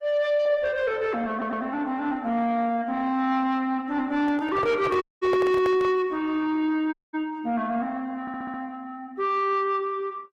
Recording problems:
lossy codec; Opus, log-spectral distance 2 dB, nothing above 16.1 kHz
distorted audio; soft clipping, signal-to-distortion ratio 11 dB
stutter; at 1.5 s and at 8 s
handling noise; from 4 to 6 s; peak +1 dB vs average level
audio cutting out; at 5 s and at 7 s

